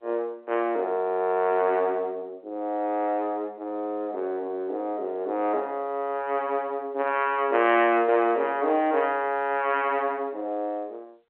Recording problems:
phone line; 260 Hz to 3.3 kHz, G.711

